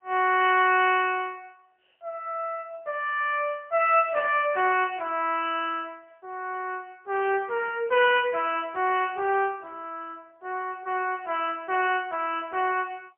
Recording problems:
phone line; 340 Hz to 3.3 kHz, AMR-NB, then MP3

